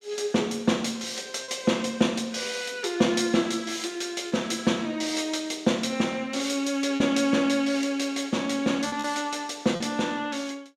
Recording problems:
packet loss; 2% of the sound replaced, filled with repeated pitch periods

